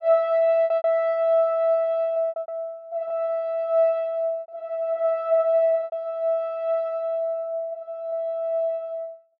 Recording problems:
lost packets; 6% of the sound replaced, filled with repeated pitch periods

